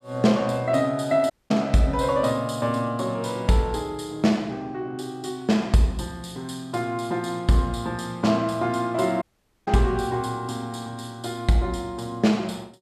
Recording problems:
audio cutting out; at 1.5 s and at 9 s

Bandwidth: 14.5 kHz